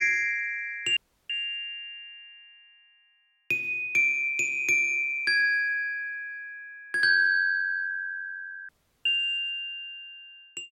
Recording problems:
audio cutting out; at 1 s and at 8.5 s

